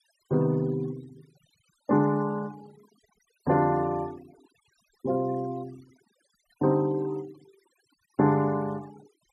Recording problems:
noise reduction artefacts; signal-to-artefact ratio 26 dB

